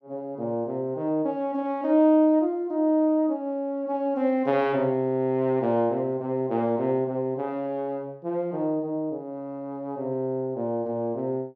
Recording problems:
none

